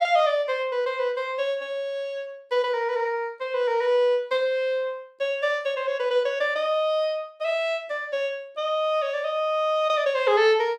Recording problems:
none

